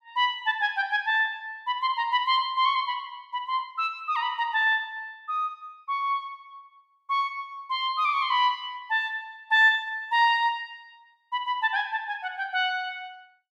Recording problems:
none

